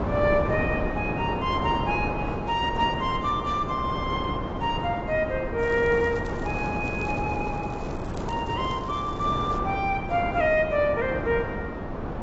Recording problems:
lossy codec; AAC, log-spectral distance 2 dB, nothing above 7.3 kHz
wind on the microphone; below 710 Hz, SNR 4 dB
crackling; from 5.5 to 9.5 s; loose cable, SNR 25 dB

